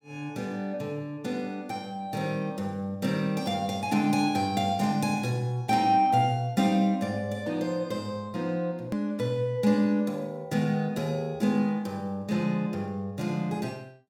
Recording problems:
edit click; at 9 s

